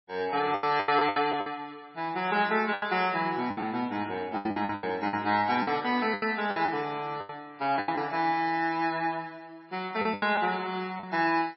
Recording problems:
lossy codec; MP3, log-spectral distance 3 dB, nothing above 4.9 kHz
packet loss; 11% of the sound replaced, filled with the last packet

